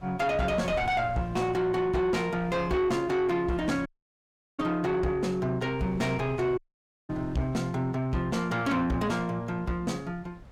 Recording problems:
distorted audio; soft clipping, signal-to-distortion ratio 10 dB
wind noise; below 340 Hz, SNR 18 dB
dropout; at 4 s for 0.5 s and at 6.5 s for 0.5 s

